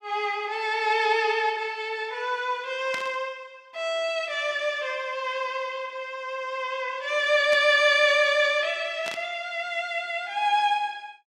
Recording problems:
static burst; at 3 s, at 7.5 s and at 9 s; peak -5 dB vs average level

